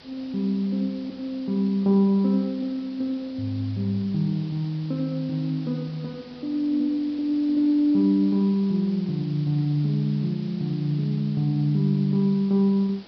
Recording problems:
treble missing; nothing above 5.5 kHz
hiss; SNR 23 dB

